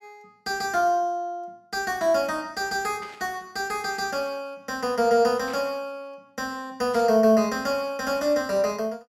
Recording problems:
static burst; at 3 s, at 5.5 s and at 7 s; peak -14 dB vs average level

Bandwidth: 16 kHz